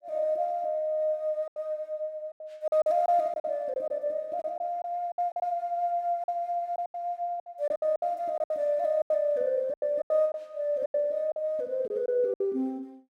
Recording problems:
lost packets; 11% of the sound replaced, filled with silence

